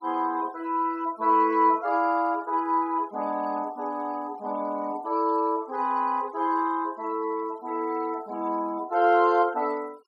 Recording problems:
denoising artefacts; signal-to-artefact ratio 26 dB

